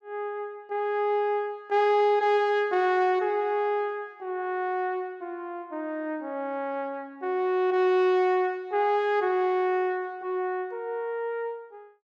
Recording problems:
none

